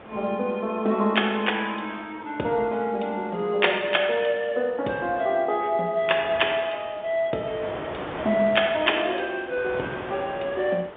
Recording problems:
phone line; 300 Hz to 3.6 kHz, G.711
wind on the microphone; below 1.4 kHz, SNR 14 dB

